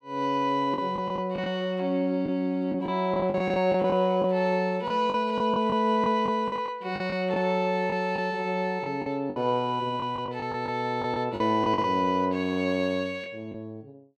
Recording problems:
packet loss; 9% of the sound replaced, filled with the last packet

